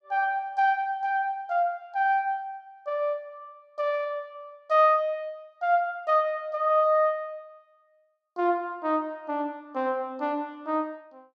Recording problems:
none

